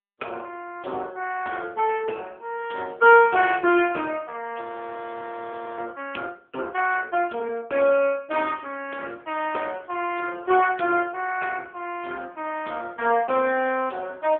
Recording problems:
phone line; 260 Hz to 2.6 kHz, AMR-NB
frozen audio; at 4.5 s for 1 s

